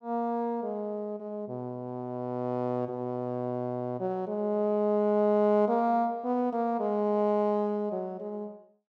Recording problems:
none

